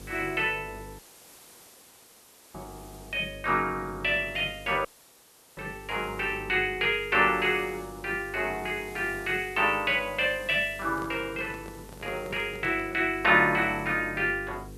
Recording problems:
mains hum; 50 Hz, harmonics up to 500 Hz, SNR 20 dB
background hiss; slope -2 dB per octave, SNR 24 dB
audio cutting out; at 1 s for 1.5 s and at 5 s for 0.5 s
handling noise; from 11 to 13 s; peak -10 dB vs average level

